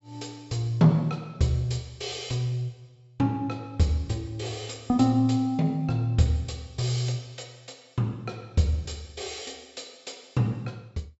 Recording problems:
treble missing; nothing above 7.8 kHz

